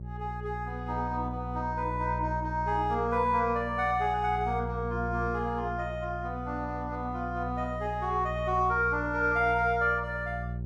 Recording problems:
hum; 60 Hz, harmonics up to 420 Hz, SNR 8 dB

